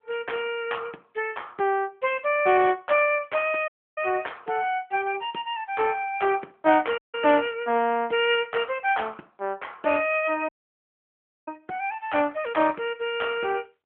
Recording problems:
telephone audio; 260 Hz to 3.3 kHz, AMR-NB
audio cutting out; at 3.5 s, at 7 s and at 10 s for 1 s

